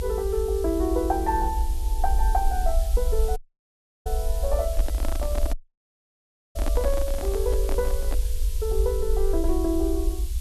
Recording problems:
hiss; slope +4 dB per octave, SNR 13 dB
rumble; below 56 Hz, SNR 0 dB
dropout; at 3.5 s for 0.5 s and at 5.5 s for 1 s
handling noise; from 4.5 to 8 s; peak 0 dB vs average level

